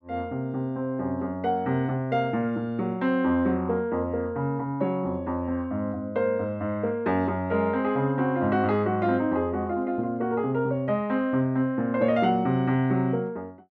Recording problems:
none

